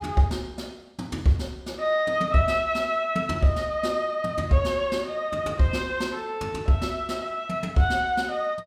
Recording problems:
none

